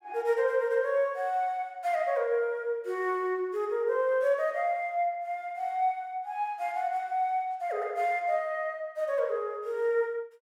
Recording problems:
none

